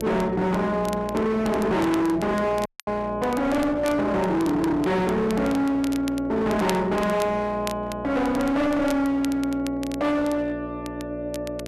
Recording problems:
distorted audio; hard clipping, uneven, signal-to-distortion ratio 7 dB
hum; 60 Hz, harmonics up to 780 Hz, SNR 13 dB
crackle; vinyl, SNR 18 dB
audio cutting out; at 2.5 s

